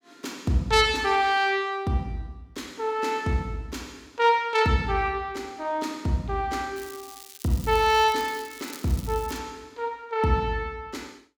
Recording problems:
crackling; from 7 to 9.5 s; loose cable, SNR 17 dB

